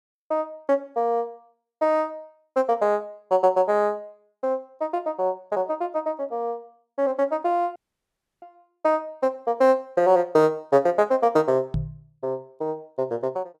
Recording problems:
dropout; at 8 s for 0.5 s
knock on the microphone; at 12 s; peak +1 dB vs average level

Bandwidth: 13 kHz